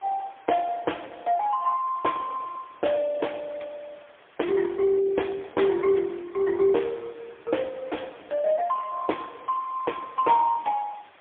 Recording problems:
phone line; 320 Hz to 3.4 kHz, AMR-NB, then MP3
hiss; SNR 27 dB

